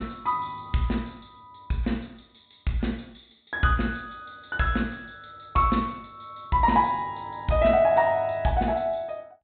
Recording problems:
low-pass filter; nothing above 4 kHz

